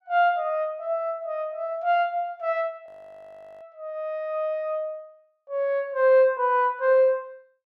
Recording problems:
frozen audio; at 3 s for 1 s

